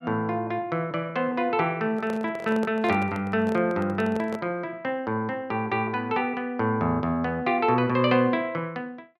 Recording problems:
handling noise; from 2 to 4.5 s; peak -5 dB vs average level

